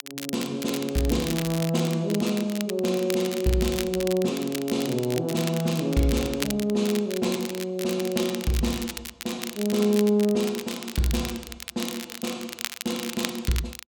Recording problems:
crackling; vinyl, SNR 9 dB

